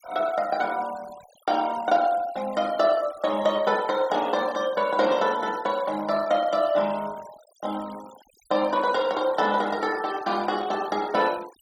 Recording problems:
noise reduction artefacts; signal-to-artefact ratio 20 dB

